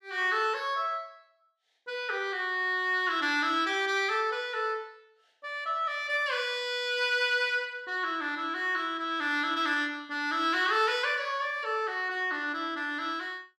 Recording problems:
none

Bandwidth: 14.5 kHz